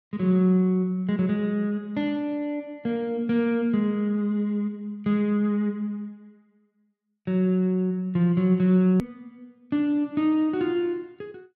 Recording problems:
edit click; at 9 s

